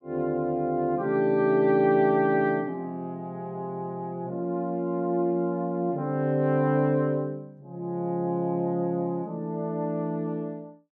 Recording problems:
none

